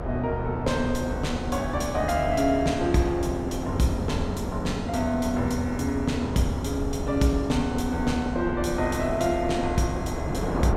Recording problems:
rumble; below 110 Hz, SNR 10 dB
wind noise; below 660 Hz, SNR 8 dB

